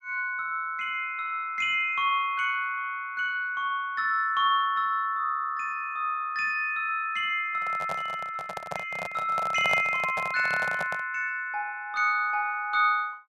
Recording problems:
microphone handling noise; from 7.5 to 11 s; peak 0 dB vs average level

